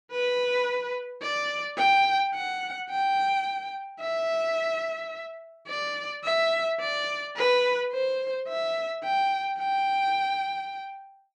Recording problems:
none

